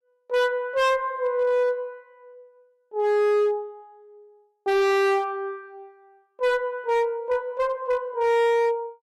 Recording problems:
distorted audio; hard clipping, uneven, signal-to-distortion ratio 6 dB

